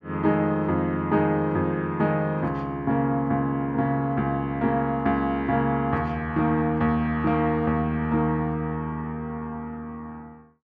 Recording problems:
none

